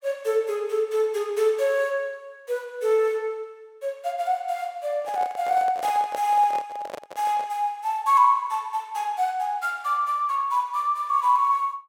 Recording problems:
handling noise; from 5 to 7.5 s; peak -5 dB vs average level

